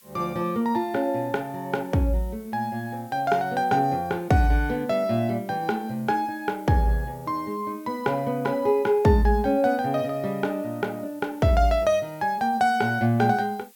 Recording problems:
background hiss; slope +3 dB per octave, SNR 27 dB

